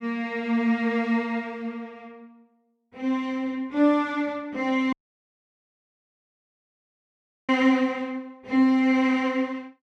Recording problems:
dropout; at 5 s for 2.5 s

